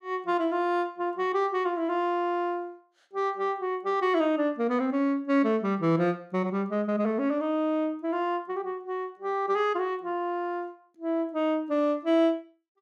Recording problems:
none

